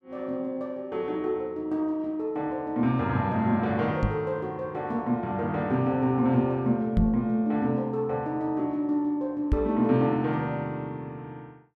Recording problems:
knock on the microphone; at 4 s, at 7 s and at 9.5 s; peak +6 dB vs average level

